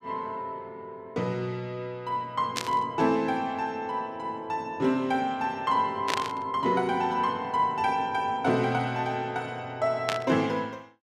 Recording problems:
burst of static; at 2.5 s, at 6 s and at 10 s; peak +3 dB vs average level

